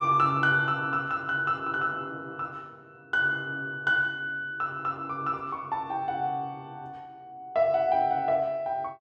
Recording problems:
none

